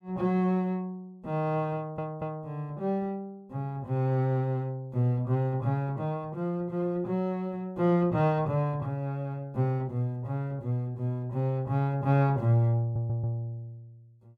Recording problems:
stutter; at 2 s and at 13 s

